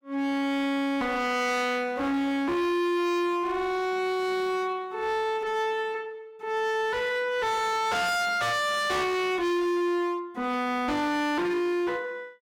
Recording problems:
distortion; hard clipping, uneven, signal-to-distortion ratio 6 dB

